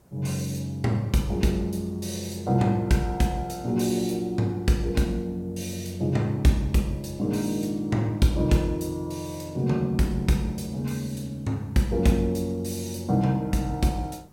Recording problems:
background hiss; SNR 30 dB

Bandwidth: 16.5 kHz